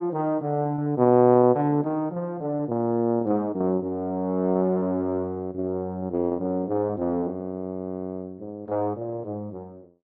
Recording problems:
lost packets; 13% of the sound replaced, filled with repeated pitch periods

